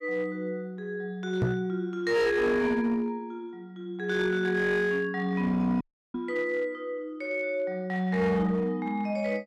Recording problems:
distorted audio; hard clipping, uneven, signal-to-distortion ratio 12 dB
microphone bump; at 1.5 s and at 6 s; peak +5 dB vs average level
dropout; at 6 s

